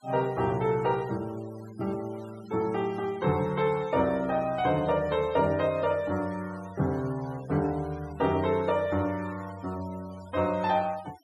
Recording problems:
denoising artefacts; signal-to-artefact ratio 22 dB

